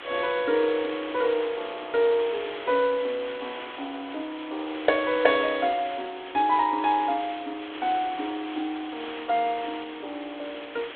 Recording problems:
telephone audio; 240 Hz to 3.9 kHz, G.726
background hiss; SNR 13 dB

